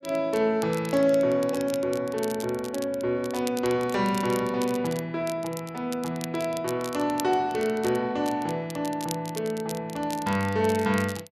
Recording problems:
crackle; vinyl, SNR 15 dB

